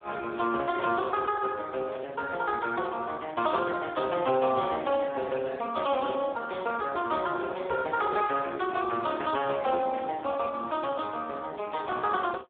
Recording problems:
telephone audio; 240 Hz to 2.1 kHz, Speex
static burst; 4 times, first at 2 s; peak -17 dB vs average level

